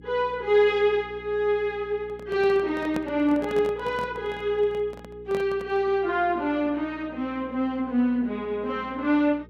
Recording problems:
electrical hum; 60 Hz, harmonics up to 480 Hz, SNR 22 dB
microphone handling noise; from 2 to 6 s; peak -4 dB vs average level

